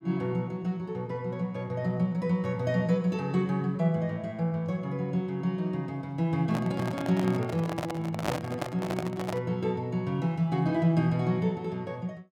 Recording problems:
handling noise; from 6.5 to 9.5 s; peak +4 dB vs average level

